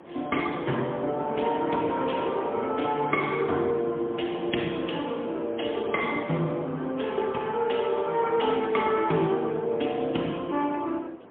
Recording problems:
phone line; 220 Hz to 3.3 kHz, AMR-NB, then MP3
wind noise; below 840 Hz, SNR 13 dB

